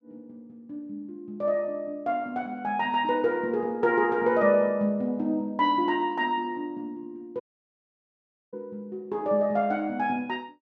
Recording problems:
dropout; at 7.5 s for 1 s

